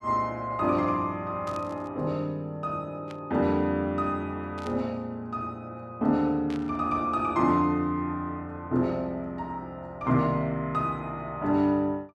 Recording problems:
burst of static; 4 times, first at 1.5 s; peak -12 dB vs average level

